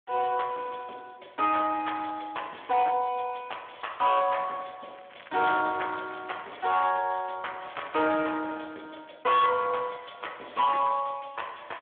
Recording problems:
phone line; 240 Hz to 3.4 kHz, Speex
distortion; hard clipping, signal-to-distortion ratio 12 dB
crackling; from 5 to 7.5 s and at 7.5 s; loose cable, SNR 24 dB

